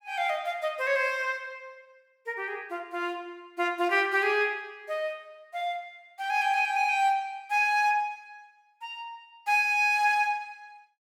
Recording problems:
none

